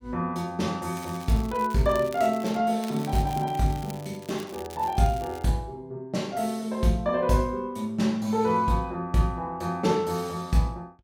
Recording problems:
crackling; from 1 to 2.5 s and from 3 to 5.5 s; loose cable, SNR 19 dB

